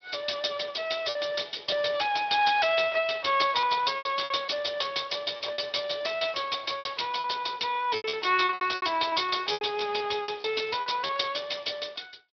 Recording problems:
treble missing; nothing above 5.5 kHz
lossy codec; Speex, log-spectral distance 9 dB
lost packets; 9% of the sound replaced, filled with repeated pitch periods

